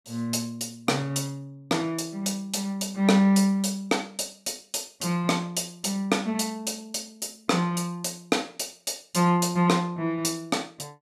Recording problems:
none

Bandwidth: 14.5 kHz